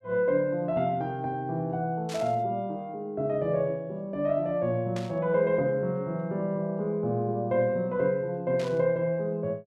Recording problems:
burst of static; at 2 s, at 5 s and at 8.5 s; peak -8 dB vs average level

